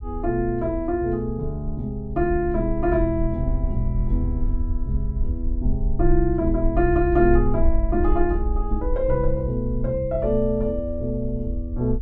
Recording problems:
rumble; below 54 Hz, SNR 4 dB

